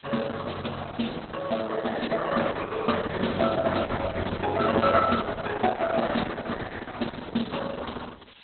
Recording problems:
lossy codec; Opus, log-spectral distance 19 dB, nothing above 4.1 kHz
hiss; SNR 23 dB

